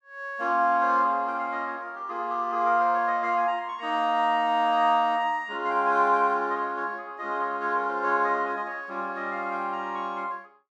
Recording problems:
none

